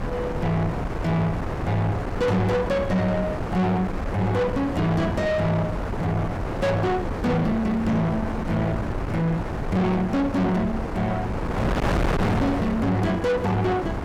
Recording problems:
distorted audio; soft clipping, signal-to-distortion ratio 6 dB
wind noise; below 730 Hz, SNR 4 dB

